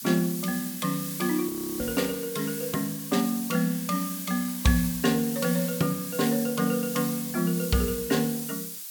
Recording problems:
hiss; slope +5 dB per octave, SNR 7 dB
frozen audio; at 1.5 s

